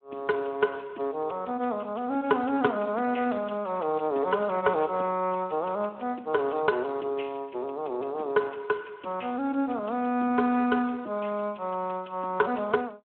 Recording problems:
telephone audio; 260 Hz to 2.8 kHz, Speex

